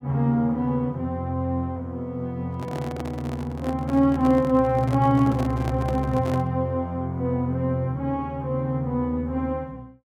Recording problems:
handling noise; from 2.5 to 6.5 s; peak -5 dB vs average level

